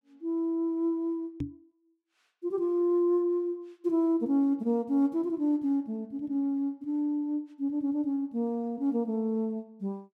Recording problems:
microphone bump; at 1.5 s; peak 0 dB vs average level

